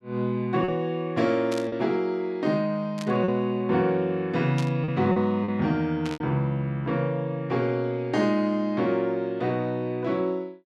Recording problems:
packet loss; 3% of the sound replaced, filled with repeated pitch periods
static burst; 4 times, first at 1.5 s; peak -7 dB vs average level

